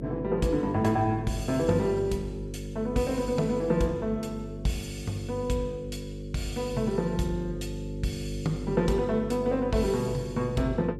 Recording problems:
hum; 50 Hz, harmonics up to 550 Hz, SNR 9 dB

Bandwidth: 14 kHz